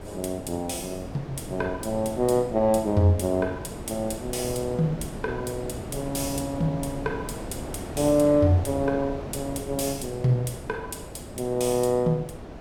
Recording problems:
wind on the microphone; below 590 Hz, SNR 11 dB

